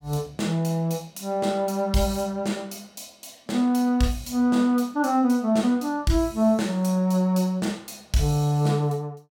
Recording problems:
none

